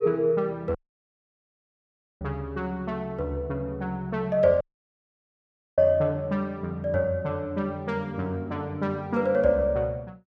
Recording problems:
audio cutting out; at 1 s for 1.5 s and at 4.5 s for 1 s

